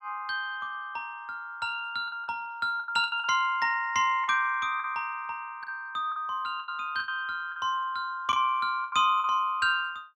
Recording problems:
lost packets; 8% of the sound replaced, filled with the last packet

